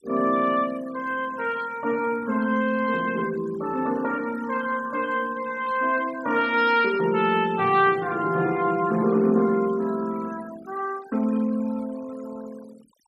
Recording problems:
denoising artefacts; signal-to-artefact ratio 20 dB

